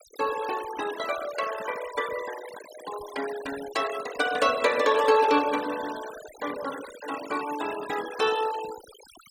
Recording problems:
denoising artefacts; signal-to-artefact ratio 12 dB

